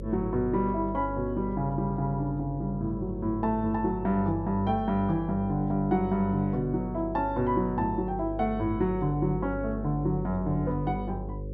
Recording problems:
hum; 50 Hz, harmonics up to 550 Hz, SNR 10 dB

